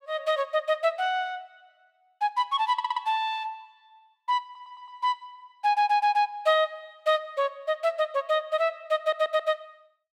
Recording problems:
audio stuttering; 4 times, first at 2.5 s

